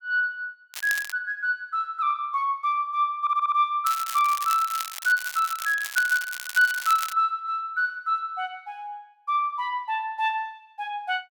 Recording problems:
crackling; at 0.5 s and from 4 to 7 s; loose cable, SNR 10 dB
stutter; at 3 s

